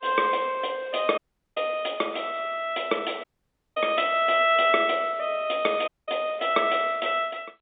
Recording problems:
phone line; 240 Hz to 3.6 kHz, G.711
audio cutting out; at 1 s, at 3 s for 0.5 s and at 6 s

